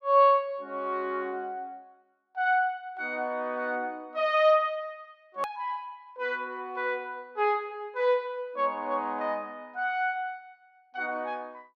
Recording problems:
hard cut with a click; at 5.5 s

